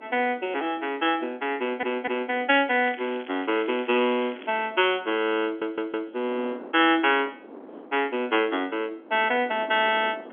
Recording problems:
phone line; 220 Hz to 3.4 kHz, G.711
wind on the microphone; below 650 Hz, SNR 21 dB
audio stuttering; at 1.5 s and at 5.5 s
crackle; from 2.5 to 4.5 s; loose cable, SNR 20 dB

